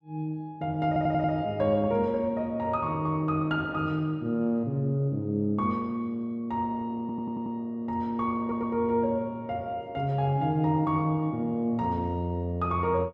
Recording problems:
stutter; at 1 s, at 7 s and at 8.5 s

